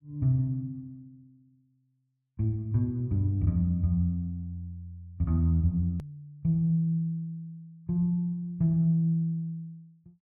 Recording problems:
hard cut with a click; at 6 s

